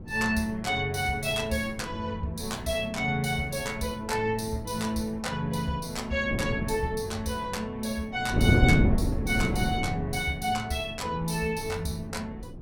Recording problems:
wind on the microphone; below 260 Hz, SNR 2 dB

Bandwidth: 17.5 kHz